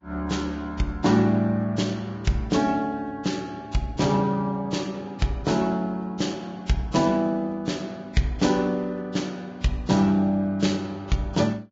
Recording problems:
lossy compression; Vorbis, log-spectral distance 3 dB, nothing above 7.3 kHz

